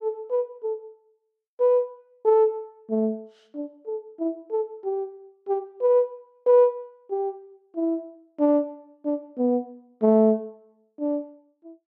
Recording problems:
none

